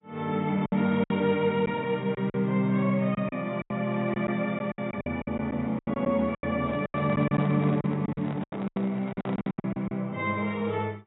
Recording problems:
lossy codec; AAC, log-spectral distance 2 dB, nothing above 3.8 kHz
packet loss; 13% of the sound replaced, filled with silence
handling noise; from 6.5 to 9.5 s; peak -8 dB vs average level

